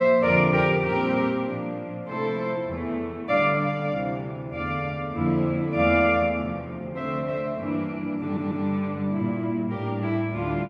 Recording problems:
stutter; at 8 s

